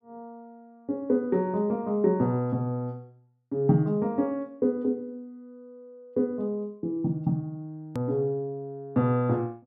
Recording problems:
edit click; at 8 s

